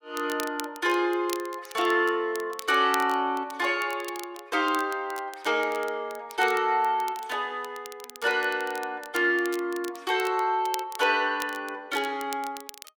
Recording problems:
crackle; vinyl, SNR 17 dB

